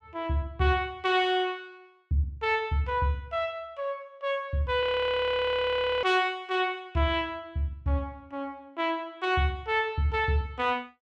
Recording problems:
frozen audio; at 5 s for 1 s

